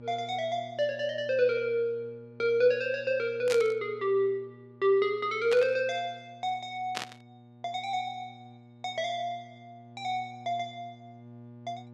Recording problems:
electrical hum; 60 Hz, harmonics up to 960 Hz, SNR 21 dB
static burst; at 3.5 s, at 5.5 s and at 7 s; peak 0 dB vs average level

